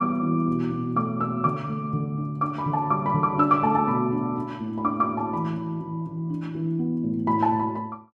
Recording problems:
none

